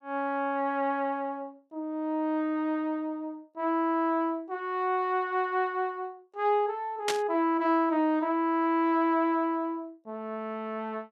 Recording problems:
burst of static; at 7 s; peak +3 dB vs average level

